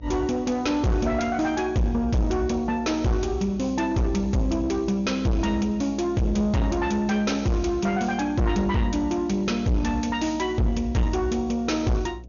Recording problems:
low-pass filter; nothing above 6.6 kHz
distorted audio; soft clipping, signal-to-distortion ratio 7 dB
mains hum; 60 Hz, harmonics up to 660 Hz, SNR 20 dB

